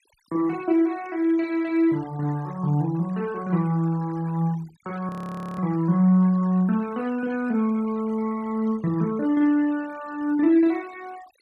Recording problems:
noise reduction artefacts; signal-to-artefact ratio 24 dB
frozen audio; at 5 s

